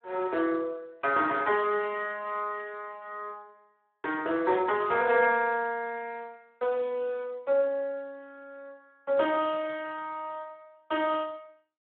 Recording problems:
telephone audio; 340 Hz to 3.5 kHz, Speex

